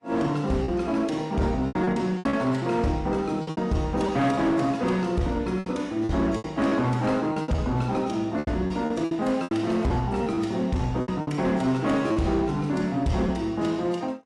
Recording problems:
lossy codec; AAC, log-spectral distance 2 dB, nothing above 11.3 kHz
distorted audio; hard clipping, uneven, signal-to-distortion ratio 12 dB
lost packets; 9% of the sound replaced, filled with repeated pitch periods

